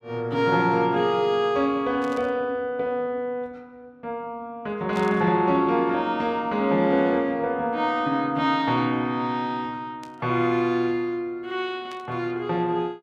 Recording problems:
burst of static; 4 times, first at 2 s; peak -14 dB vs average level

